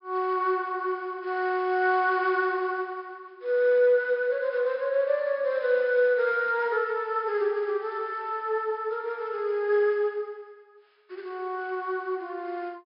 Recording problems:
treble cut off; nothing above 5.5 kHz

